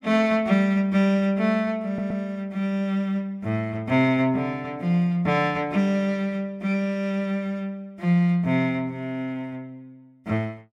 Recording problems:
stutter; at 2 s

